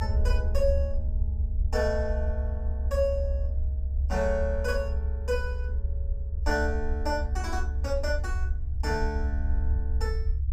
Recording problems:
rumble; below 70 Hz, SNR -2 dB

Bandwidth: 14.5 kHz